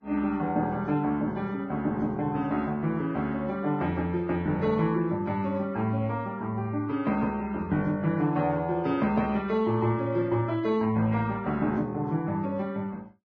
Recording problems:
lossy compression; Vorbis, log-spectral distance 2 dB, nothing above 6.3 kHz

